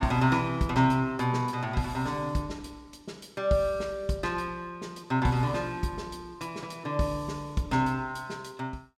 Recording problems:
none

